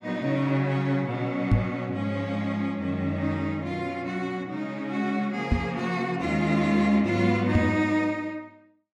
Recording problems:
knock on the microphone; at 1.5 s, at 5.5 s and at 7.5 s; peak +8 dB vs average level

